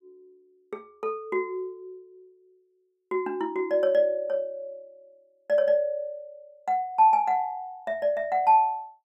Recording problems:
none

